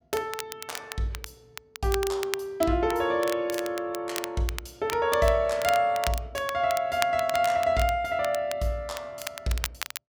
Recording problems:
crackle; vinyl, SNR 11 dB

